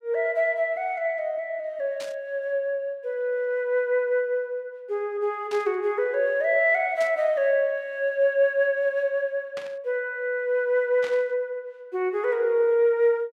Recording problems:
static burst; 5 times, first at 2 s; peak -10 dB vs average level

